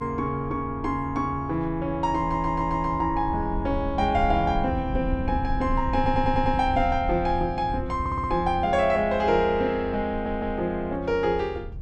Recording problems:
low-frequency rumble; below 94 Hz, SNR 9 dB
stutter; 4 times, first at 2 s

